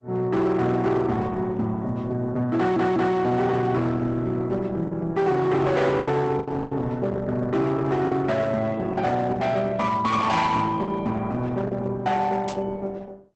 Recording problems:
codec artefacts; Opus, log-spectral distance 2 dB, nothing above 8 kHz
distortion; hard clipping, signal-to-distortion ratio 11 dB
packet loss; 3% of the sound replaced, filled with the last packet
audio stuttering; at 2.5 s
static burst; at 12 s; peak -7 dB vs average level

